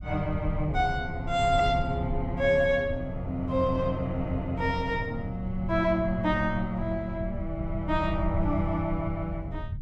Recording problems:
rumble; below 100 Hz, SNR 8 dB

